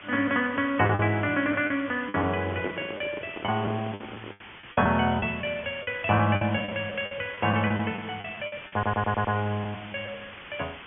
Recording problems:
treble missing; nothing above 3.4 kHz
background hiss; SNR 16 dB
packet loss; 8% of the sound replaced, filled with the last packet
handling noise; from 2.5 to 4.5 s; peak -2 dB vs average level
audio stuttering; at 8.5 s

